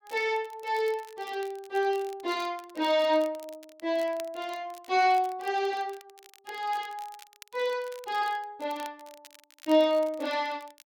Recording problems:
crackle; vinyl, SNR 23 dB

